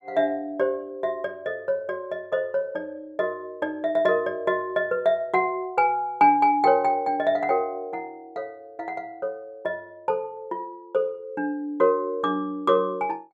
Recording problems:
none

